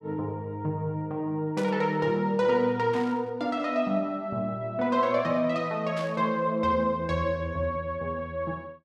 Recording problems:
static burst; at 1.5 s, at 3 s and at 6 s; peak -10 dB vs average level

